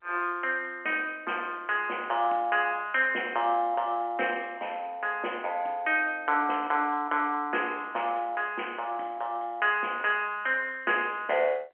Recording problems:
telephone audio; 260 Hz to 3.2 kHz, G.711

